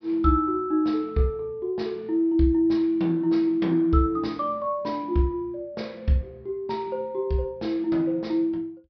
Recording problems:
treble missing; nothing above 5.5 kHz

